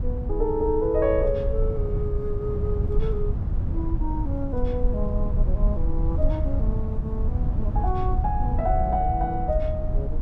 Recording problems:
low-frequency rumble; below 84 Hz, SNR -1 dB

